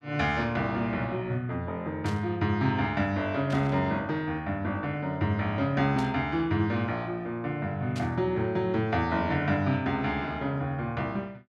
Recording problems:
static burst; 4 times, first at 2 s; peak -9 dB vs average level

